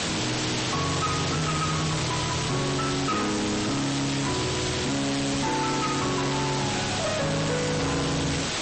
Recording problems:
lossy compression; MP3, log-spectral distance 17 dB, nothing above 8.2 kHz
distorted audio; soft clipping, signal-to-distortion ratio 5 dB
background hiss; slope -2 dB per octave, SNR 1 dB

